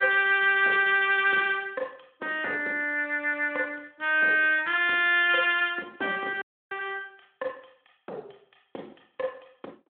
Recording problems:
telephone audio; 280 Hz to 3.5 kHz, Speex
dropout; at 6.5 s

